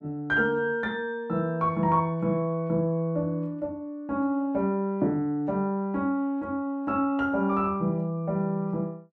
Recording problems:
none

